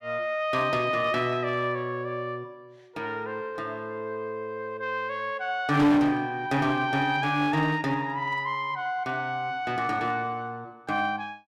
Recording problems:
distortion; hard clipping, uneven, signal-to-distortion ratio 9 dB

